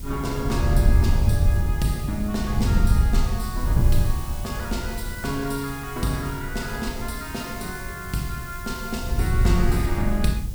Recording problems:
hiss; SNR 12 dB
wind on the microphone; below 98 Hz, SNR -5 dB

